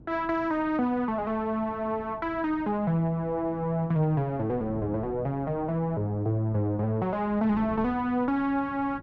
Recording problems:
wind noise; below 280 Hz, SNR 18 dB

